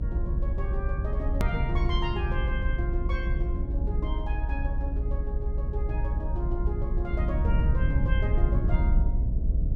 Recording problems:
hum; 60 Hz, harmonics up to 660 Hz, SNR 7 dB
rumble; below 70 Hz, SNR -8 dB
hard cut with a click; at 1.5 s

